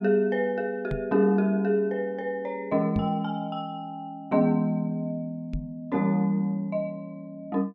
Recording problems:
microphone bump; at 1 s, at 3 s and at 5.5 s; peak 0 dB vs average level

